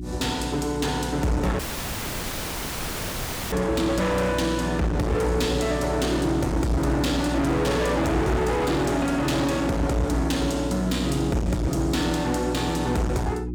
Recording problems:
distortion; hard clipping, uneven, signal-to-distortion ratio 5 dB
electrical hum; 60 Hz, harmonics up to 360 Hz, SNR 8 dB
dropout; at 1.5 s for 2 s

